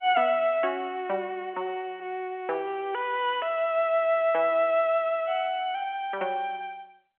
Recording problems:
phone line; 300 Hz to 3.4 kHz, G.711

